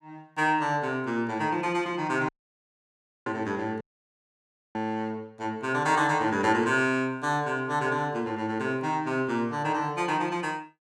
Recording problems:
dropout; at 2.5 s for 1 s and at 4 s for 1 s

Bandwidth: 15.5 kHz